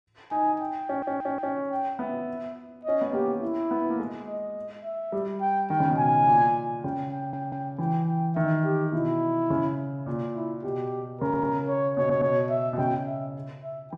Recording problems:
stutter; 4 times, first at 1 s

